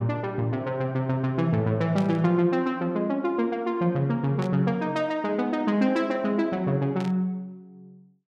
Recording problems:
static burst; at 2 s, at 4.5 s and at 7 s; peak -9 dB vs average level

